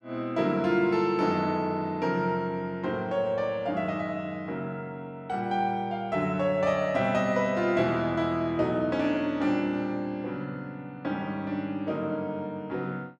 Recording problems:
none

